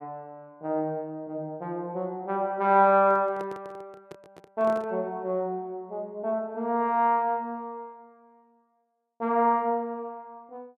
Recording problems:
handling noise; from 3 to 5 s; peak -10 dB vs average level

